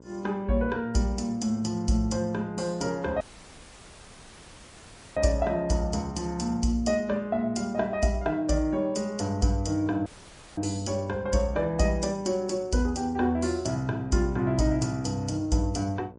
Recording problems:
lossy compression; MP3, log-spectral distance 3 dB, nothing above 10.1 kHz
hum; 60 Hz, harmonics up to 1.1 kHz, SNR 22 dB
audio cutting out; at 3 s for 2 s and at 10 s for 0.5 s

